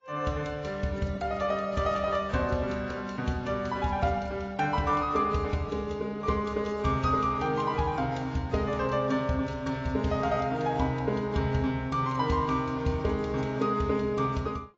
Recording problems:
lossy compression; AAC, log-spectral distance 2 dB

